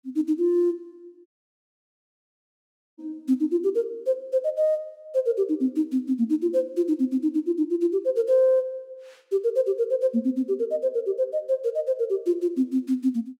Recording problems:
dropout; at 1.5 s for 1.5 s

